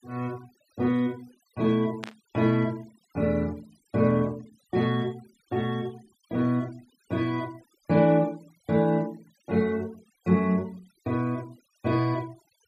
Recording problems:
noise reduction artefacts; signal-to-artefact ratio 27 dB
burst of static; at 2 s; peak -5 dB vs average level

